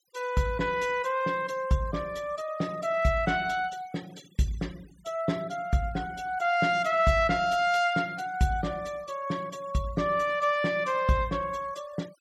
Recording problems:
denoising artefacts; signal-to-artefact ratio 23 dB

